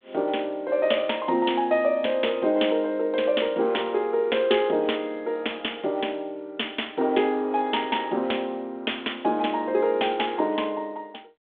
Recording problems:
phone line; 240 Hz to 3.6 kHz, G.726

